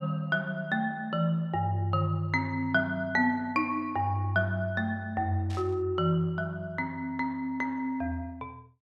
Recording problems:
burst of static; at 5.5 s; peak -13 dB vs average level

